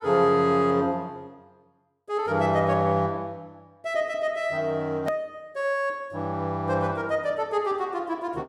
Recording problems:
hard cut with a click; at 5 s

